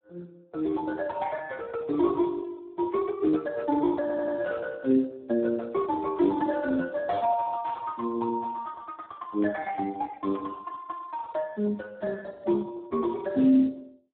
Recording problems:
phone line; 220 Hz to 2 kHz, Speex
audio stuttering; at 4 s
static burst; at 6 s, at 7.5 s and at 10 s; peak -17 dB vs average level

